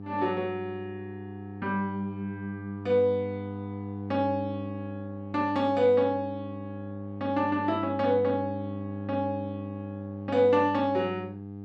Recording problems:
hum; 50 Hz, harmonics up to 800 Hz, SNR 10 dB

